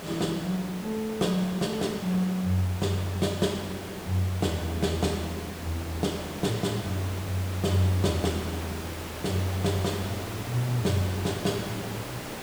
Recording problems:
hiss; slope -5 dB per octave, SNR 9 dB

